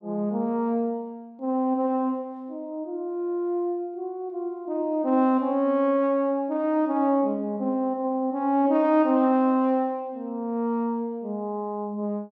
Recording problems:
none

